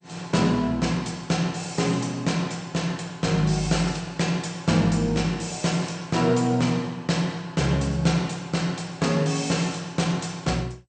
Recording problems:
codec artefacts; MP2, log-spectral distance 4 dB, nothing above 8.5 kHz

